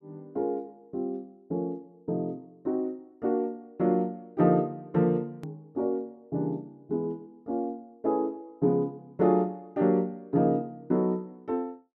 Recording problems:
hard cut with a click; at 5.5 s

